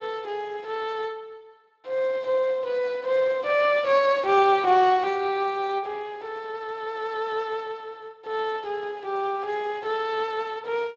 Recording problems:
lossy compression; Speex, log-spectral distance 3 dB

